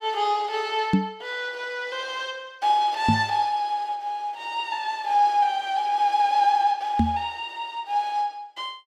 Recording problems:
microphone thump; at 1 s, at 3 s and at 7 s; peak +8 dB vs average level

